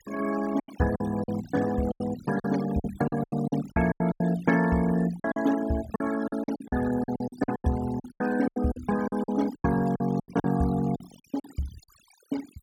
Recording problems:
noise reduction artefacts; signal-to-artefact ratio 15 dB
packet loss; 16% of the sound replaced, filled with silence

